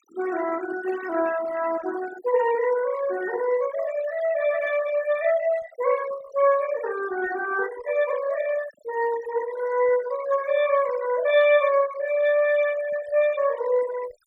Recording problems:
noise reduction artefacts; signal-to-artefact ratio 15 dB

